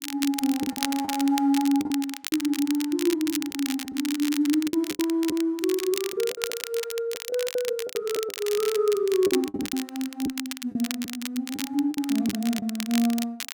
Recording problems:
crackle; vinyl, SNR 8 dB
packet loss; 10% of the sound replaced, filled with the last packet

